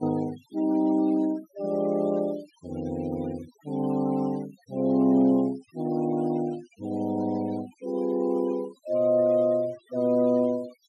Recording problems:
noise reduction artefacts; signal-to-artefact ratio 24 dB

